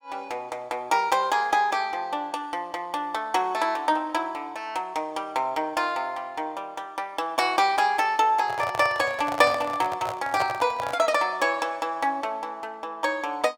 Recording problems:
handling noise; from 8.5 to 11 s; peak 0 dB vs average level

